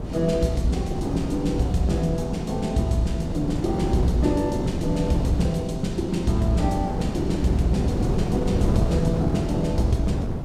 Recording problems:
wind on the microphone; below 290 Hz, SNR 3 dB

